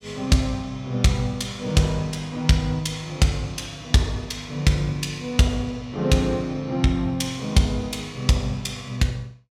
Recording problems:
none

